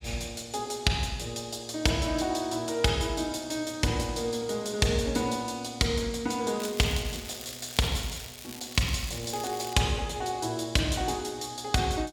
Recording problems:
crackling; from 6.5 to 9.5 s; loose cable, SNR 12 dB

